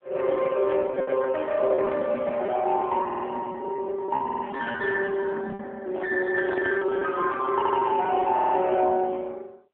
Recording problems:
telephone audio; 260 Hz to 2.8 kHz, AMR-NB
packet loss; 11% of the sound replaced, filled with repeated pitch periods
stutter; 4 times, first at 3 s
handling noise; from 6 to 8.5 s; peak -7 dB vs average level

